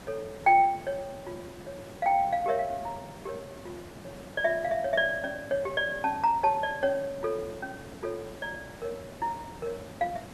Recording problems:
hiss; slope -6 dB per octave, SNR 16 dB

